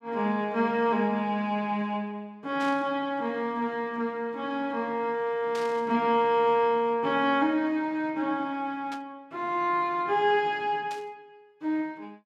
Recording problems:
static burst; 4 times, first at 2.5 s; peak -10 dB vs average level

